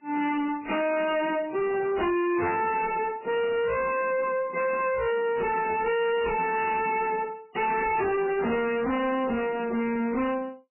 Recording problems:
lossy codec; AAC, then MP3, log-spectral distance 4 dB, nothing above 2.8 kHz
distortion; soft clipping, signal-to-distortion ratio 5 dB

